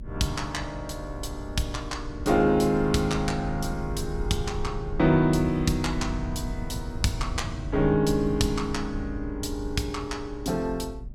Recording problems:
hum; 60 Hz, harmonics up to 600 Hz, SNR 22 dB
rumble; below 94 Hz, SNR 9 dB

